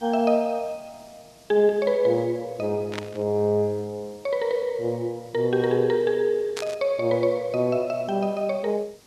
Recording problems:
hiss; SNR 28 dB
burst of static; at 3 s and at 6.5 s; peak -5 dB vs average level

